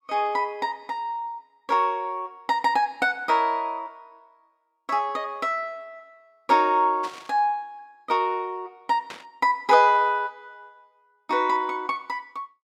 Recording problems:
static burst; at 7 s and at 9 s; peak -9 dB vs average level

